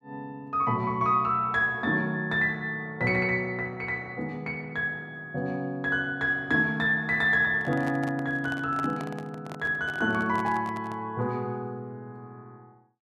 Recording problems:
microphone handling noise; from 7.5 to 11 s; peak -8 dB vs average level

